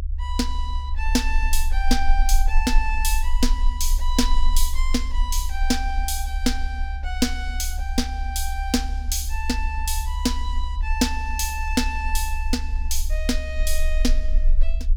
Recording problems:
rumble; below 40 Hz, strongest tone 20 Hz, SNR 0 dB

